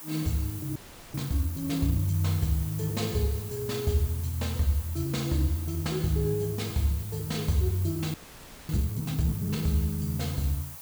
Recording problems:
background hiss; SNR 12 dB
frozen audio; at 1 s and at 8 s for 0.5 s

